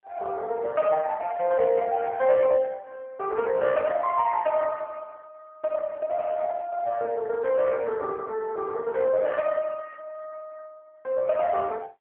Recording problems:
telephone audio; 150 Hz to 3.1 kHz, AMR-NB

